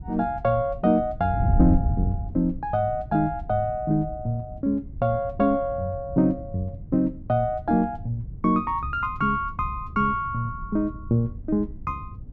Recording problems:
wind on the microphone; below 110 Hz, SNR 9 dB

